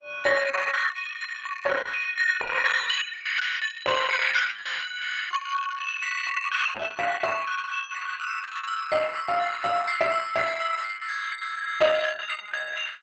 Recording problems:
lossy codec; Opus, log-spectral distance 7 dB, nothing above 7.6 kHz

